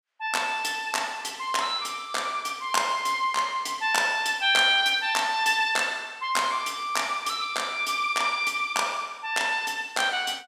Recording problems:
none

